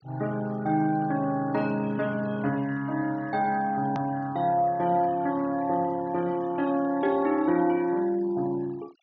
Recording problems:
low-pass filter; nothing above 6.5 kHz
denoising artefacts; signal-to-artefact ratio 23 dB
hard cut with a click; at 4 s

